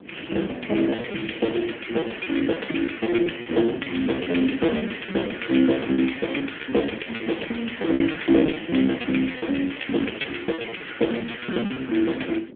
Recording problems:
telephone audio; 220 Hz to 3.4 kHz, AMR-NB
wind noise; below 420 Hz, SNR 19 dB
lost packets; 15% of the sound replaced, filled with repeated pitch periods

